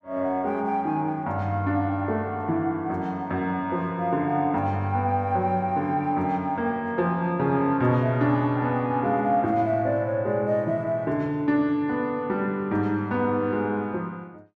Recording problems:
none

